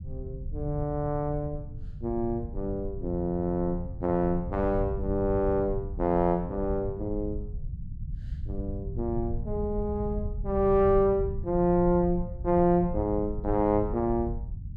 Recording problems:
low-frequency rumble; below 100 Hz, SNR 9 dB

